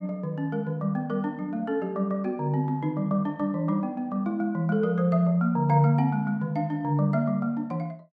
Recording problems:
none

